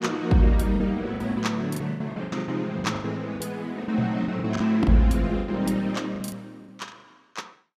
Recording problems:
packet loss; 15% of the sound replaced, filled with the last packet

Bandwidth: 15 kHz